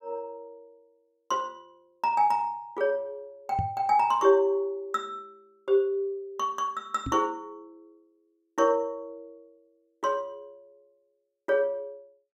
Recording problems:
microphone thump; at 3.5 s and at 7 s; peak 0 dB vs average level

